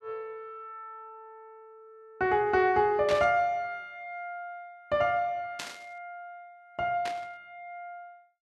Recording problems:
static burst; at 3 s, at 5.5 s and at 7 s; peak -3 dB vs average level

